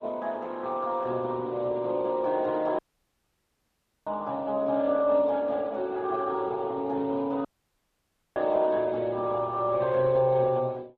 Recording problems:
lossy compression; Speex, then Opus, log-spectral distance 2 dB
audio cutting out; at 3 s for 1.5 s and at 7.5 s for 1 s

